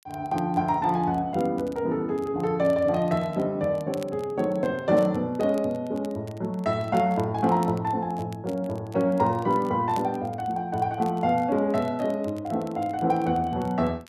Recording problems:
crackle; vinyl, SNR 27 dB

